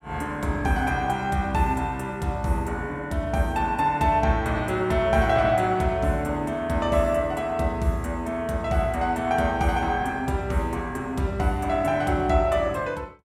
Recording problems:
none

